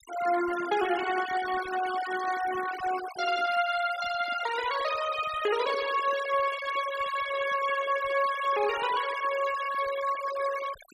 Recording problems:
denoising artefacts; signal-to-artefact ratio 11 dB

